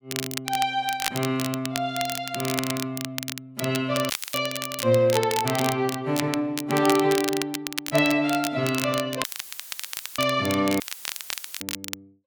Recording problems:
crackling; vinyl, SNR 7 dB
dropout; at 4 s, at 9 s for 1 s and at 11 s for 1 s; filled with static

